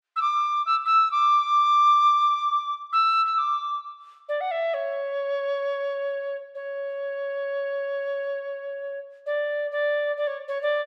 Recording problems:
none

